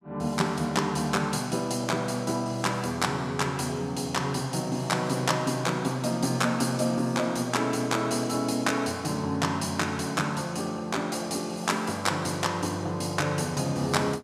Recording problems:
none

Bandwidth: 14.5 kHz